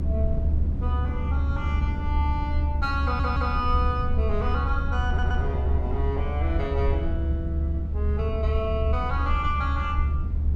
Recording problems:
low-frequency rumble; below 74 Hz, strongest tone 72 Hz, SNR -3 dB
wind noise; below 170 Hz, SNR 4 dB
audio stuttering; at 3 s and at 5 s

